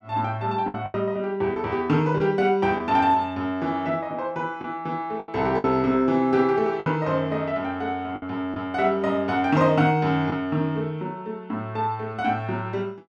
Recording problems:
packet loss; 4% of the sound replaced, filled with the last packet

